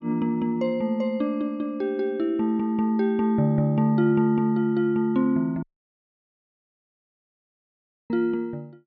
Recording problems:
dropout; at 5.5 s for 2.5 s

